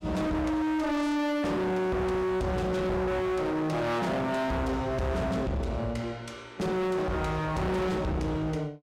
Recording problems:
distortion; hard clipping, signal-to-distortion ratio 6 dB

